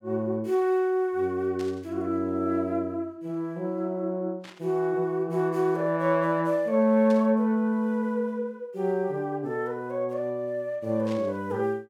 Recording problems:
burst of static; 4 times, first at 1.5 s; peak -13 dB vs average level

